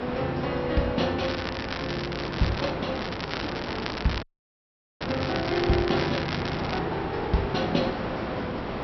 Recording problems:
treble missing; nothing above 5.7 kHz
hum; 60 Hz, harmonics up to 420 Hz, SNR 18 dB
hiss; SNR 4 dB
crackling; from 1 to 2.5 s and from 3 to 7 s; loose cable, SNR 6 dB
dropout; at 4 s for 1 s

